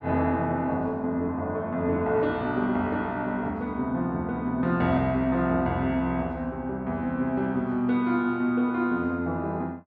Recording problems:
none

